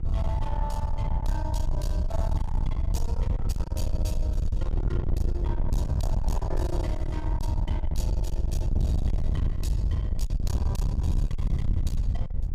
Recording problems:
distorted audio; soft clipping, signal-to-distortion ratio 12 dB
wind on the microphone; below 86 Hz, SNR -9 dB

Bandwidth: 15 kHz